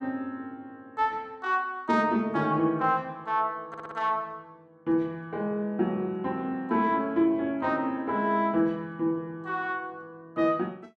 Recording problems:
stutter; at 3.5 s

